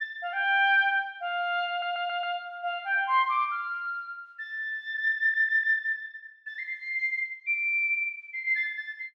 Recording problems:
audio stuttering; at 1.5 s and at 5 s

